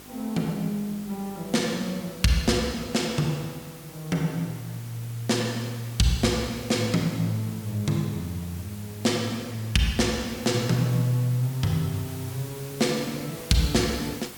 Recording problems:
electrical hum; 50 Hz, harmonics up to 1.3 kHz, SNR 26 dB
hiss; slope -2 dB per octave, SNR 16 dB

